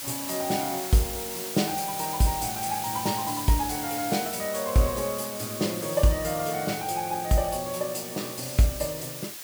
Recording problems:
hiss; slope +1 dB per octave, SNR 6 dB

